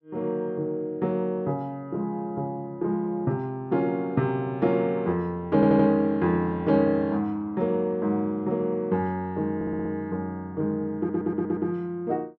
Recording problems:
stutter; at 5.5 s, at 9.5 s and at 11 s

